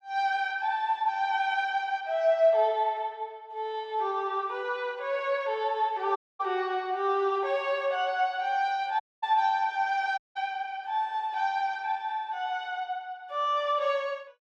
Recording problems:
dropout; at 6 s, at 9 s and at 10 s

